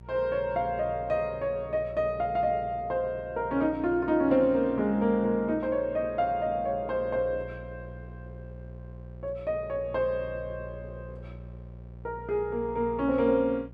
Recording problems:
hum; 60 Hz, harmonics up to 600 Hz, SNR 17 dB

